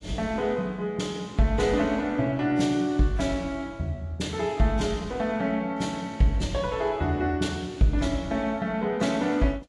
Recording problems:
lossy compression; AAC, log-spectral distance 2 dB

